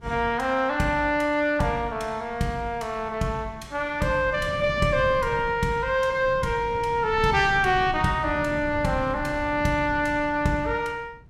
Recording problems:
wind on the microphone; below 200 Hz, SNR 14 dB

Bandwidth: 16 kHz